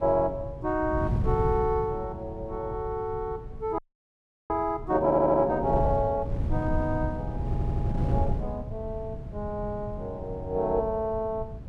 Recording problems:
wind noise; below 140 Hz, SNR 5 dB
frozen audio; at 4 s for 0.5 s
stutter; at 5 s and at 7.5 s

